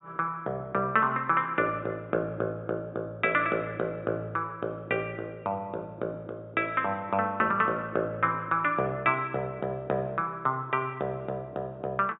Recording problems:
low-pass filter; nothing above 4 kHz

